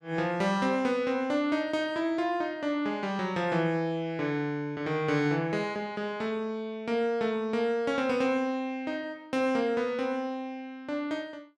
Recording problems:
none

